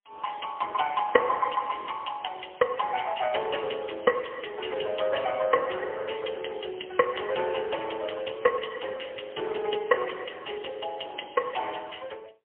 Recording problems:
phone line; 320 Hz to 3.3 kHz, AMR-NB, then MP3

